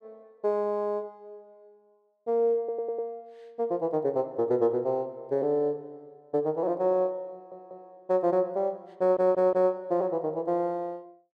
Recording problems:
audio stuttering; at 2.5 s, at 7.5 s and at 9 s

